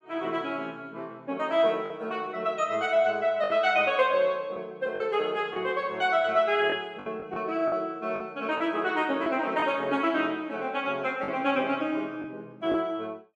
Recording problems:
lost packets; 4% of the sound replaced, filled with the last packet

